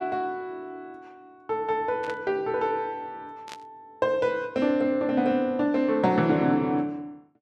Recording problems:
static burst; at 2 s and at 3.5 s; peak -10 dB vs average level

